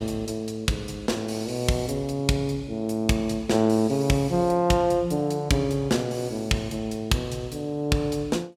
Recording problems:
none

